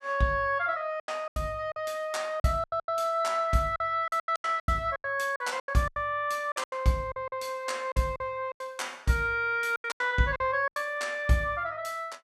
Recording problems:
lost packets; 14% of the sound replaced, filled with silence

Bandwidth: 15 kHz